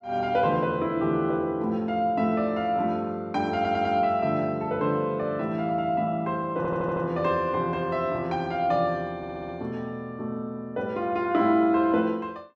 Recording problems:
audio stuttering; at 3.5 s, at 6.5 s and at 9 s

